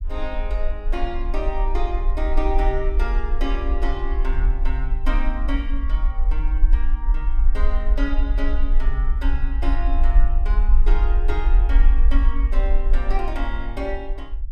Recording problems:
rumble; below 46 Hz, strongest tone 22 Hz, SNR -7 dB

